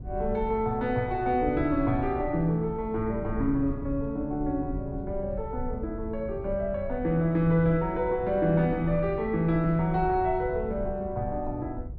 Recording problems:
low-frequency rumble; below 96 Hz, SNR 12 dB

